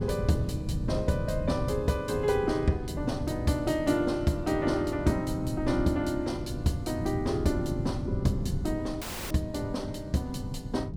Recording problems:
wind on the microphone; below 160 Hz, SNR 6 dB
dropout; at 9 s

